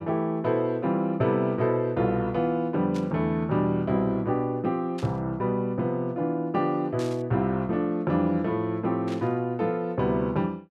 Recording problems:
burst of static; 4 times, first at 3 s; peak -11 dB vs average level

